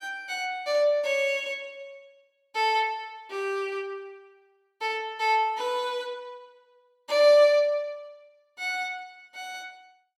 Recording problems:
none

